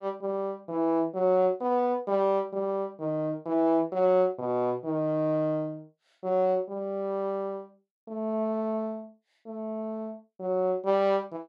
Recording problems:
none

